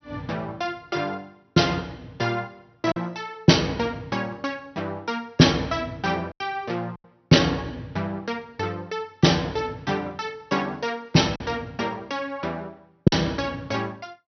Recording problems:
treble missing; nothing above 6.1 kHz
lost packets; 2% of the sound replaced, filled with silence

